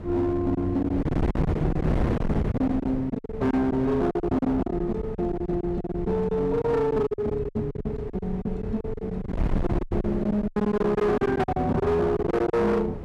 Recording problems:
distorted audio; hard clipping, uneven, signal-to-distortion ratio 8 dB
wind noise; below 260 Hz, SNR 6 dB
packet loss; 16% of the sound replaced, filled with silence

